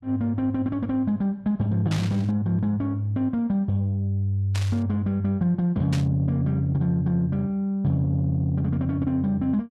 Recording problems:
burst of static; at 2 s, at 4.5 s and at 6 s; peak -6 dB vs average level

